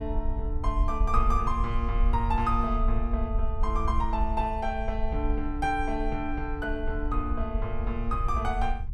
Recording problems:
low-frequency rumble; below 56 Hz, SNR 1 dB

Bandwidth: 14.5 kHz